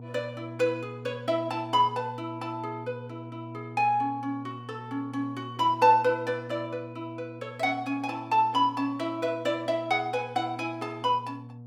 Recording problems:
mains hum; 60 Hz, harmonics up to 720 Hz, SNR 15 dB

